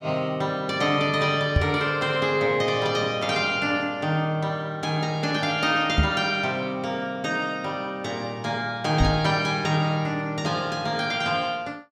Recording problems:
knock on the microphone; at 1.5 s, at 6 s and at 9 s; peak +6 dB vs average level

